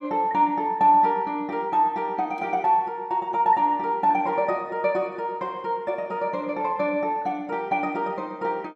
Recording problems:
none

